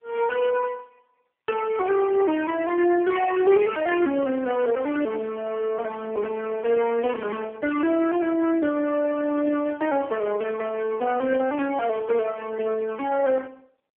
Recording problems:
telephone audio; 280 Hz to 3.1 kHz, AMR-NB

